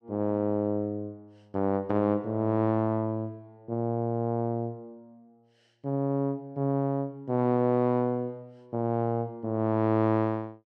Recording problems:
none

